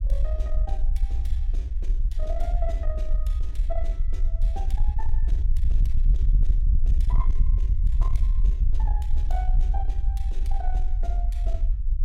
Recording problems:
distorted audio; soft clipping, signal-to-distortion ratio 12 dB
low-frequency rumble; below 50 Hz, SNR -15 dB

